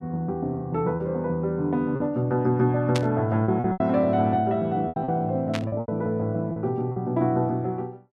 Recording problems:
lost packets; 7% of the sound replaced, filled with repeated pitch periods
static burst; at 3 s and at 5.5 s; peak -1 dB vs average level

